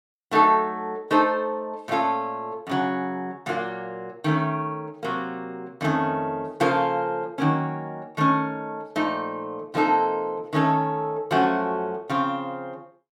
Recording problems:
none

